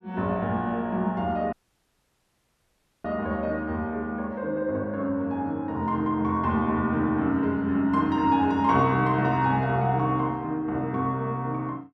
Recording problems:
audio cutting out; at 1.5 s for 1.5 s

